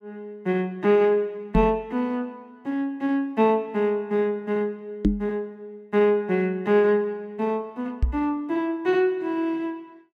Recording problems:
knock on the microphone; at 1.5 s, at 5 s and at 8 s; peak +7 dB vs average level

